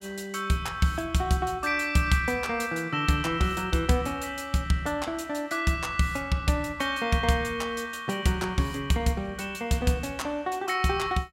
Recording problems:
none

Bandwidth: 16 kHz